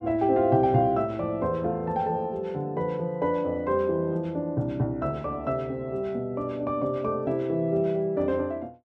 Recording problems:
none

